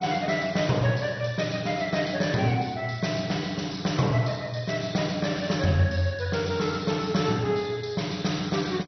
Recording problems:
lossy codec; MP2, log-spectral distance 6 dB, nothing above 6 kHz

